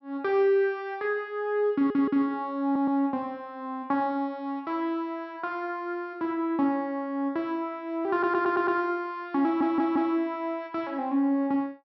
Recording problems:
treble missing; nothing above 5.7 kHz
stutter; 4 times, first at 1.5 s

